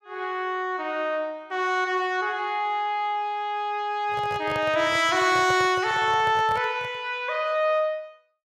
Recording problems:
handling noise; from 4 to 7 s; peak -7 dB vs average level

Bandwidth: 15 kHz